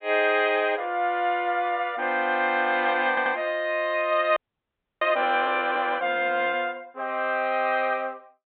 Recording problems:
treble cut off; nothing above 4 kHz
audio stuttering; at 3 s
audio freezing; at 4.5 s for 0.5 s

